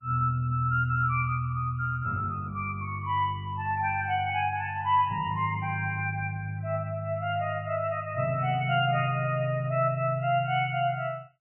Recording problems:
lossy compression; MP3, log-spectral distance 2 dB, nothing above 2.5 kHz

